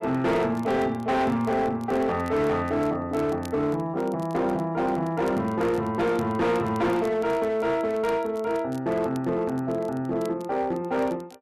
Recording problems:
distortion; hard clipping, signal-to-distortion ratio 10 dB
crackling; vinyl, SNR 27 dB

